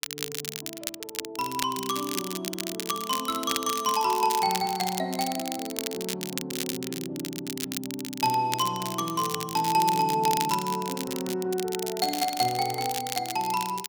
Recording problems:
crackling; vinyl, SNR 6 dB

